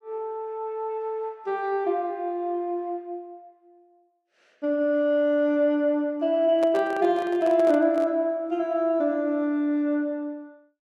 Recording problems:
handling noise; from 6.5 to 8 s; peak -6 dB vs average level

